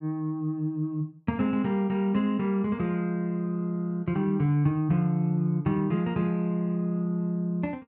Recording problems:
none

